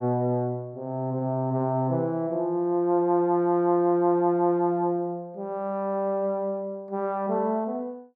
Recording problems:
none

